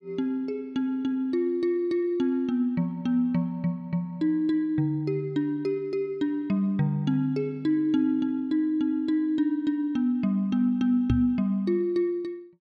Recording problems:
microphone bump; at 11 s; peak +5 dB vs average level

